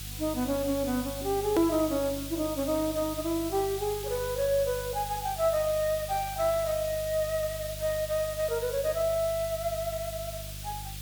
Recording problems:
electrical hum; 50 Hz, harmonics up to 350 Hz, SNR 14 dB
hiss; slope +4 dB per octave, SNR 10 dB
click at an edit; at 1.5 s

